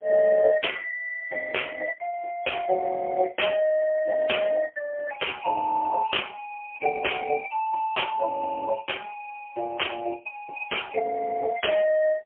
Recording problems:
telephone audio; 370 Hz to 3.1 kHz, AMR-NB, then MP3

